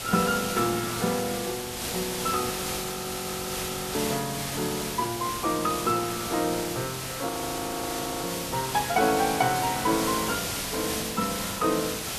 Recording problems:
background hiss; slope -1 dB per octave, SNR 3 dB
audio freezing; at 2.5 s for 1.5 s and at 7.5 s for 1 s

